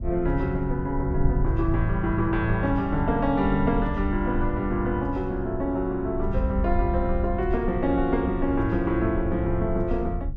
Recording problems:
wind noise; below 76 Hz, SNR 6 dB

